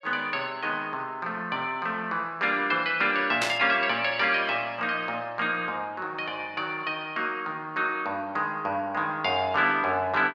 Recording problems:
burst of static; at 3.5 s; peak +2 dB vs average level

